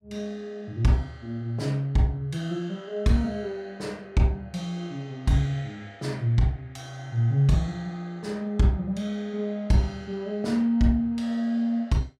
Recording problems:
none

